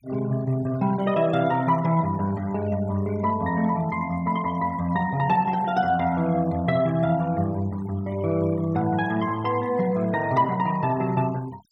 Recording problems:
noise reduction artefacts; signal-to-artefact ratio 20 dB

